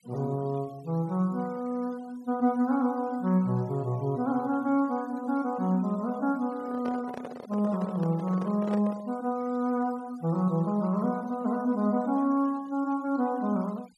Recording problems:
noise reduction artefacts; signal-to-artefact ratio 25 dB
handling noise; from 6.5 to 9 s; peak -4 dB vs average level

